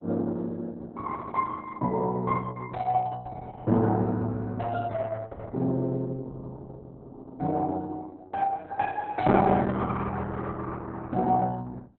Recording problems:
codec artefacts; MP2, then Opus, log-spectral distance 3 dB, nothing above 4 kHz

